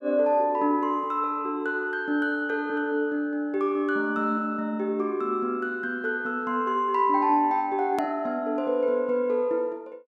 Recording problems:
hard cut with a click; at 8 s

